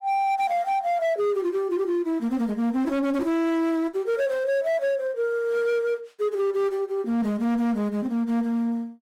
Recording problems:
distortion; hard clipping, signal-to-distortion ratio 11 dB

